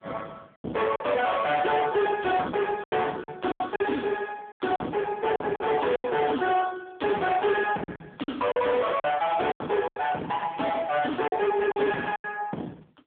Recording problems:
telephone audio; 190 Hz to 3.5 kHz, AMR-NB
distortion; hard clipping, signal-to-distortion ratio 6 dB
packet loss; 8% of the sound replaced, filled with silence

